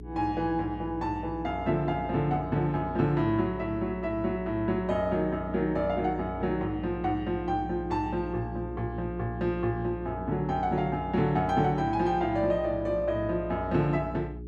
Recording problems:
hum; 60 Hz, harmonics up to 420 Hz, SNR 12 dB

